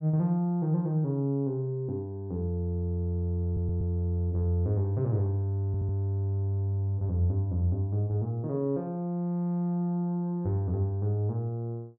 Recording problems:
audio stuttering; at 3.5 s and at 5.5 s

